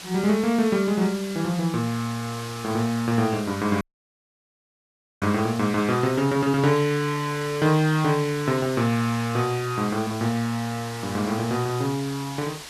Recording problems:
background hiss; slope 0 dB per octave, SNR 14 dB
dropout; at 4 s for 1.5 s

